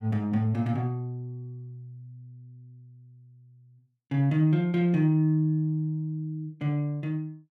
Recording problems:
none

